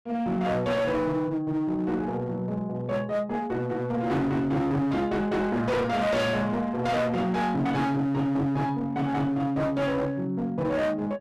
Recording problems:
distorted audio; hard clipping, uneven, signal-to-distortion ratio 7 dB

